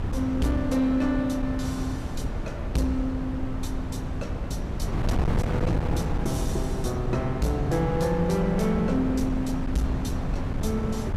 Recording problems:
distorted audio; hard clipping, signal-to-distortion ratio 12 dB
wind on the microphone; below 230 Hz, SNR 3 dB

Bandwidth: 15.5 kHz